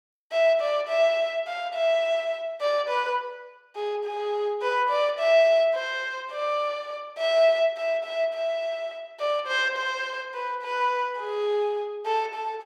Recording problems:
none

